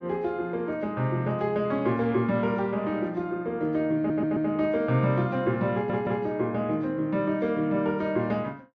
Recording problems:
stutter; at 4 s and at 5.5 s

